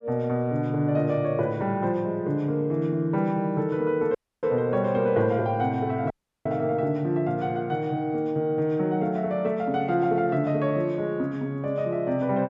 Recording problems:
audio cutting out; at 4 s and at 6 s

